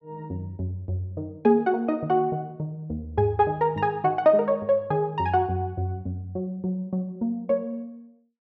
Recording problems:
none

